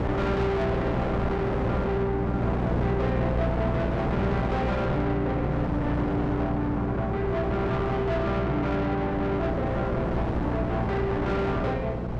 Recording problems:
distortion; soft clipping, signal-to-distortion ratio 6 dB
hum; 60 Hz, harmonics up to 540 Hz, SNR 5 dB
wind noise; below 710 Hz, SNR 3 dB

